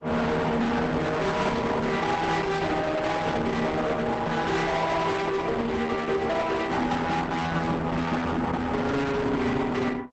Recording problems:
lossy compression; Opus, log-spectral distance 3 dB, nothing above 8 kHz
distortion; hard clipping, signal-to-distortion ratio 6 dB

